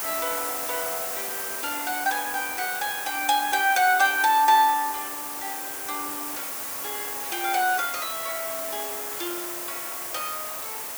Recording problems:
background hiss; SNR 5 dB

